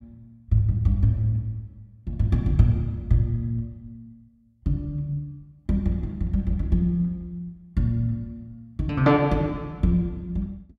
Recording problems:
none

